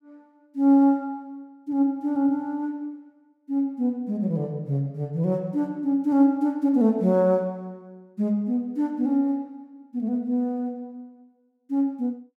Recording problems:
none

